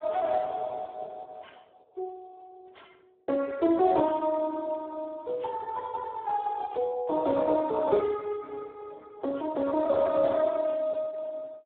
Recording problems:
phone line; 300 Hz to 2 kHz, Speex

